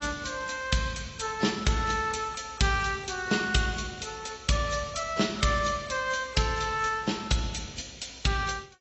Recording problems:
lossy compression; AAC, log-spectral distance 7 dB, nothing above 7.8 kHz

